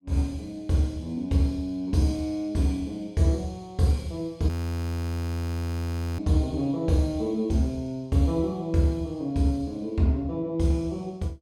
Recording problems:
frozen audio; at 4.5 s for 1.5 s

